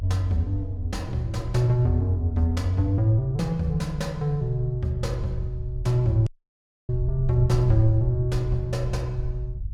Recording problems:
low-frequency rumble; below 76 Hz, SNR 9 dB
dropout; at 6.5 s for 0.5 s

